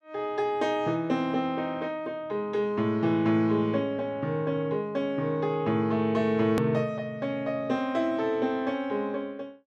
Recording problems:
edit click; at 6.5 s

